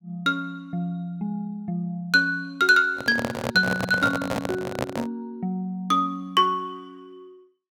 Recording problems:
microphone handling noise; from 3 to 5 s; peak +1 dB vs average level

